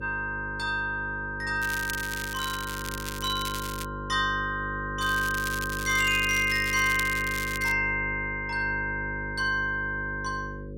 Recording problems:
electrical hum; 50 Hz, harmonics up to 550 Hz, SNR 10 dB
crackle; from 1.5 to 4 s and from 5 to 7.5 s; loose cable, SNR 10 dB

